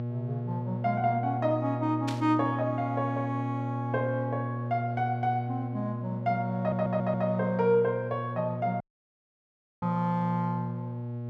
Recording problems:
electrical hum; 60 Hz, harmonics up to 840 Hz, SNR 5 dB
static burst; at 2 s; peak -4 dB vs average level
audio stuttering; at 6.5 s
audio cutting out; at 9 s for 1 s

